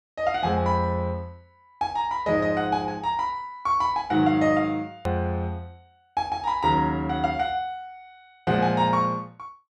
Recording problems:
hard cut with a click; at 5 s

